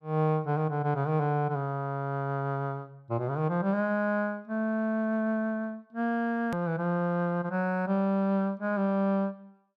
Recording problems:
click at an edit; at 6.5 s

